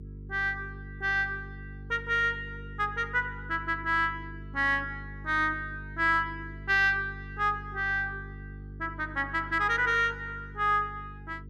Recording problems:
hum; 50 Hz, harmonics up to 450 Hz, SNR 15 dB

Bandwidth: 14.5 kHz